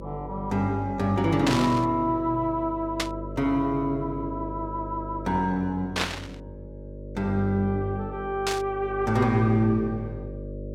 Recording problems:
electrical hum; 50 Hz, harmonics up to 600 Hz, SNR 12 dB
burst of static; 4 times, first at 1.5 s; peak +4 dB vs average level

